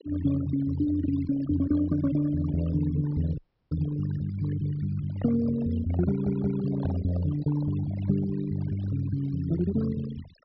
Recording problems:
treble cut off; nothing above 5.6 kHz
denoising artefacts; signal-to-artefact ratio 15 dB
dropout; at 3.5 s
handling noise; from 5 to 9 s; peak -9 dB vs average level
stutter; at 6 s

